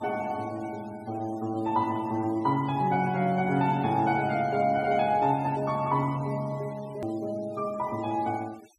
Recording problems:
noise reduction artefacts; signal-to-artefact ratio 24 dB
click at an edit; at 7 s

